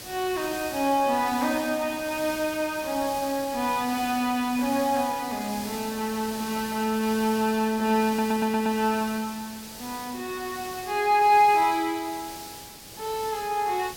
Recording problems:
background hiss; SNR 13 dB
audio stuttering; at 8 s

